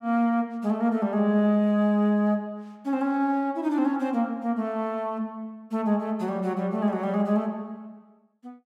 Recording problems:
none

